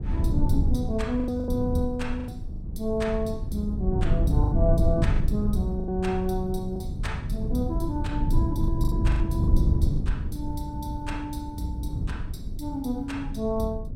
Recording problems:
rumble; below 120 Hz, SNR -2 dB
packet loss; 6% of the sound replaced, filled with the last packet

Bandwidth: 16 kHz